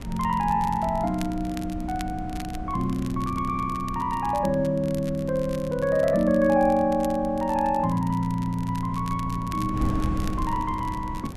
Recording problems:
wind on the microphone; below 200 Hz, SNR 11 dB
crackle; vinyl, SNR 21 dB

